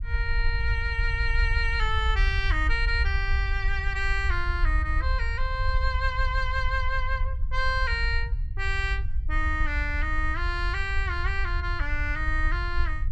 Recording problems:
rumble; below 64 Hz, SNR 1 dB

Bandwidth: 13 kHz